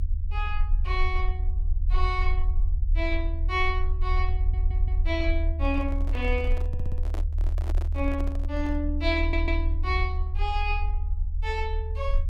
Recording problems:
rumble; below 74 Hz, strongest tone 34 Hz, SNR -3 dB
stutter; at 4.5 s, at 6.5 s and at 9 s
microphone handling noise; from 5.5 to 9 s; peak -3 dB vs average level

